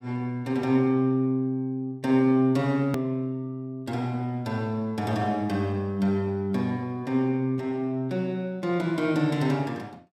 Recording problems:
hard cut with a click; at 3 s

